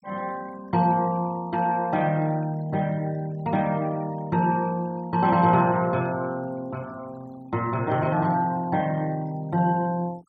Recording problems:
denoising artefacts; signal-to-artefact ratio 24 dB

